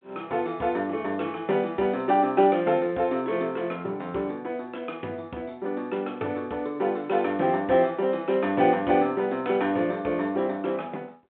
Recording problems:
telephone audio; 220 Hz to 3.6 kHz, G.726

